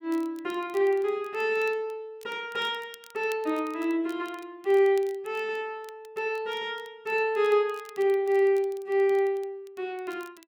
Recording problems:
crackle; vinyl, SNR 27 dB

